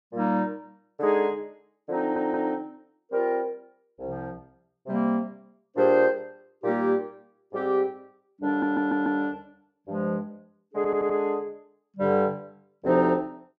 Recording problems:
audio stuttering; at 2 s, at 8.5 s and at 11 s

